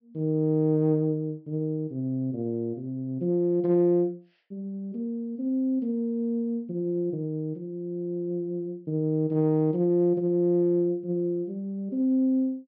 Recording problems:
treble missing; nothing above 5.5 kHz

